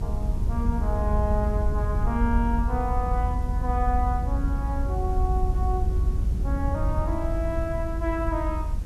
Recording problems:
background hiss; slope -4 dB per octave, SNR 21 dB
low-frequency rumble; below 78 Hz, SNR -3 dB

